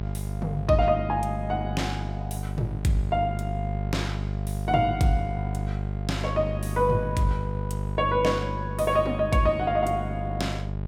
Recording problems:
hum; 50 Hz, harmonics up to 850 Hz, SNR 4 dB

